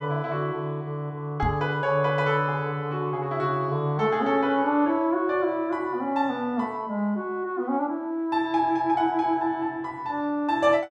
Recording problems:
microphone bump; at 1.5 s; peak 0 dB vs average level

